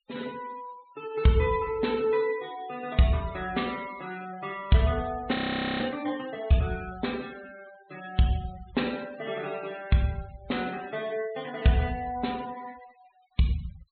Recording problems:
treble cut off; nothing above 4.2 kHz
denoising artefacts; signal-to-artefact ratio 20 dB
frozen audio; at 5.5 s

